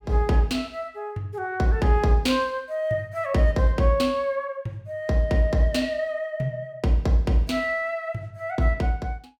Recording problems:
none

